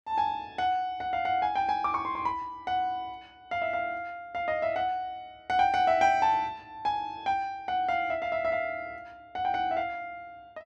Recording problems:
none

